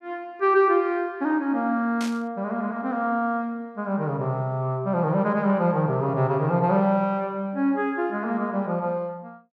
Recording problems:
static burst; at 2 s; peak -7 dB vs average level

